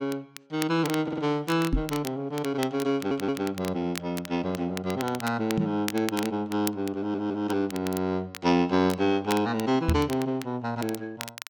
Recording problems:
crackling; vinyl, SNR 13 dB
audio stuttering; at 1 s, at 3 s and at 7 s
knock on the microphone; at 1.5 s, at 5.5 s and at 10 s; peak +5 dB vs average level

